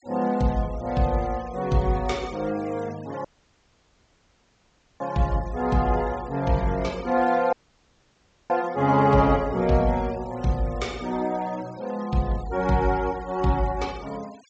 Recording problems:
treble missing; nothing above 8 kHz
denoising artefacts; signal-to-artefact ratio 22 dB
dropout; at 3.5 s for 2 s and at 7.5 s for 1 s

